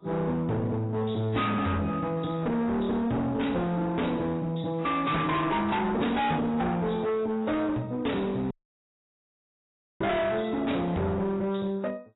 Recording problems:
lossy codec; AAC, log-spectral distance 4 dB, nothing above 3.8 kHz
distorted audio; hard clipping, uneven, signal-to-distortion ratio 6 dB
audio cutting out; at 8.5 s for 1.5 s

